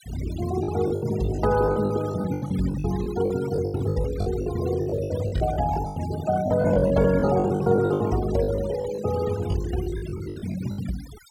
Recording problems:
denoising artefacts; signal-to-artefact ratio 15 dB
lost packets; 18% of the sound replaced, filled with the last packet

